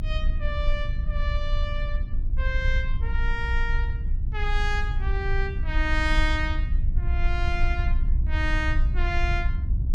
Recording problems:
hum; 60 Hz, harmonics up to 720 Hz, SNR 16 dB
rumble; below 58 Hz, strongest tone 26 Hz, SNR -3 dB

